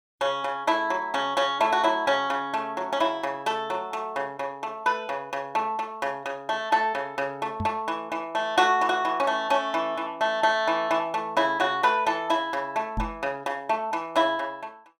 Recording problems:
microphone thump; at 7.5 s and at 13 s; peak -1 dB vs average level

